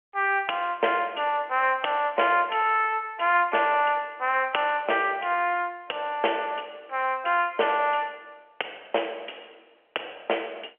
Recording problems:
telephone audio; 340 Hz to 3.2 kHz, G.711

